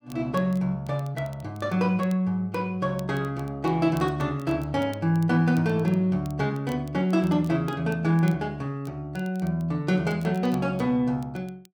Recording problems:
crackling; vinyl, SNR 28 dB

